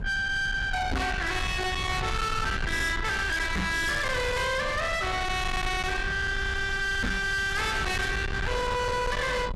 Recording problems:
distortion; soft clipping, signal-to-distortion ratio 6 dB
rumble; below 1.6 kHz, SNR 6 dB
knock on the microphone; at 1 s, at 3.5 s and at 7 s; peak +2 dB vs average level

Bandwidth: 12.5 kHz